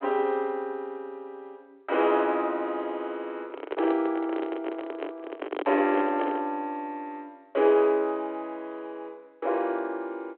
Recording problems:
phone line; 260 Hz to 3.4 kHz, G.726
microphone handling noise; from 3.5 to 6.5 s; peak +1 dB vs average level

